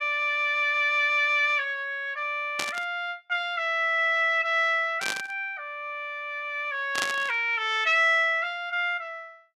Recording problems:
static burst; at 2.5 s, at 5 s and at 7 s; peak +1 dB vs average level

